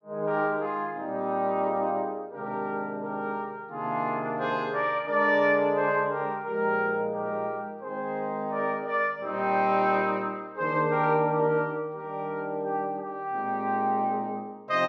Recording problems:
none

